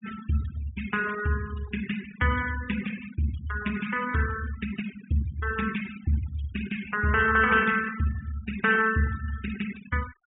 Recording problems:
treble cut off; nothing above 4 kHz
noise reduction artefacts; signal-to-artefact ratio 13 dB

